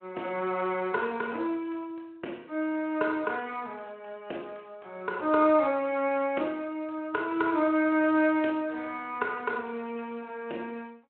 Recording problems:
phone line; 260 Hz to 3.4 kHz, Speex

